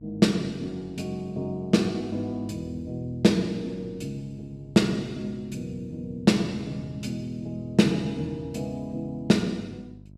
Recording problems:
electrical hum; 50 Hz, harmonics up to 400 Hz, SNR 22 dB

